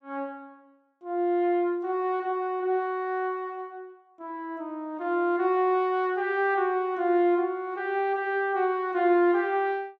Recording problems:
none

